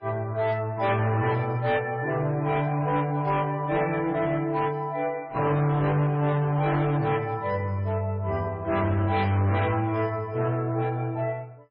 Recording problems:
codec artefacts; AAC, then MP3, log-spectral distance 2 dB
distortion; hard clipping, signal-to-distortion ratio 12 dB

